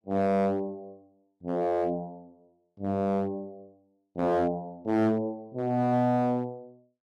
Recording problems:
distortion; hard clipping, uneven, signal-to-distortion ratio 11 dB

